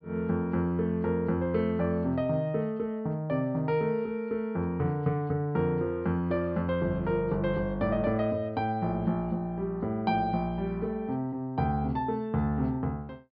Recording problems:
low-pass filter; nothing above 5.5 kHz

